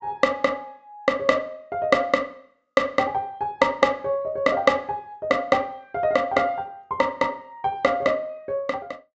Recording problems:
treble cut off; nothing above 8 kHz

